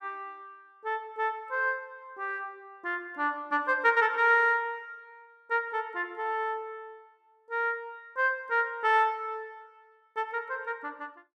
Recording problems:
none

